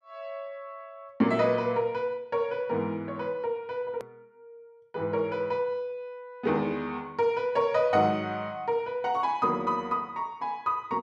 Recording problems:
hard cut with a click; at 4 s

